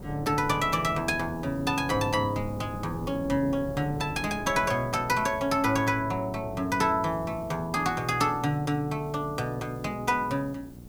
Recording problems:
hum; 60 Hz, harmonics up to 780 Hz, SNR 19 dB
hiss; SNR 28 dB
wind noise; below 320 Hz, SNR 16 dB

